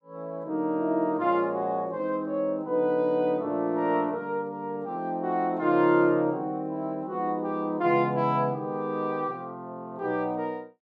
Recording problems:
none

